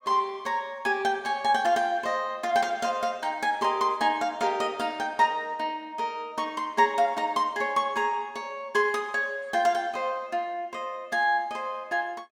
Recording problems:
none

